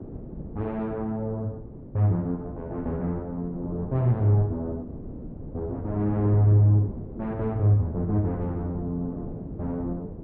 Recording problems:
wind on the microphone; below 310 Hz, SNR 12 dB

